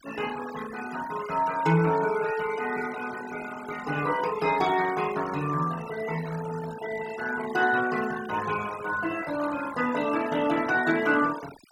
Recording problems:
denoising artefacts; signal-to-artefact ratio 14 dB

